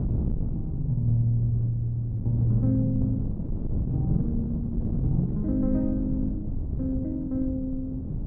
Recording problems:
wind on the microphone; below 170 Hz, SNR 4 dB

